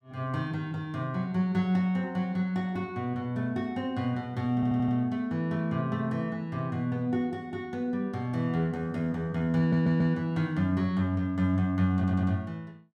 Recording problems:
stutter; at 4.5 s, at 9.5 s and at 12 s

